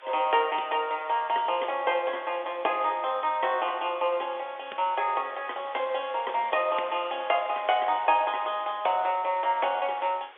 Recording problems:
telephone audio; 320 Hz to 3.6 kHz, G.711
background hiss; SNR 22 dB

